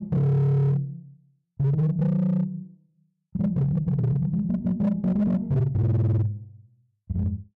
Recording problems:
distortion; hard clipping, signal-to-distortion ratio 11 dB

